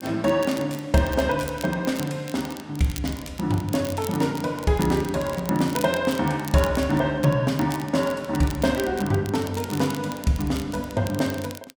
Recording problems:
crackle; vinyl, SNR 16 dB

